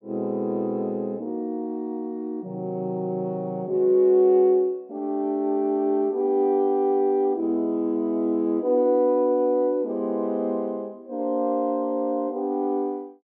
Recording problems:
none

